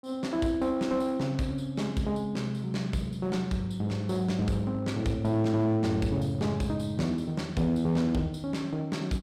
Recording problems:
distorted audio; hard clipping, uneven, signal-to-distortion ratio 11 dB

